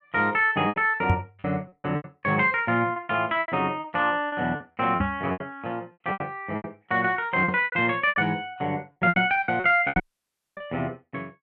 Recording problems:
packet loss; 13% of the sound replaced, filled with repeated pitch periods
microphone bump; at 1 s, at 5 s and at 10 s; peak +5 dB vs average level
audio cutting out; at 10 s for 0.5 s

